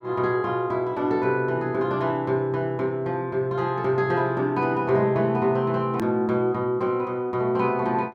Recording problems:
click at an edit; at 6 s

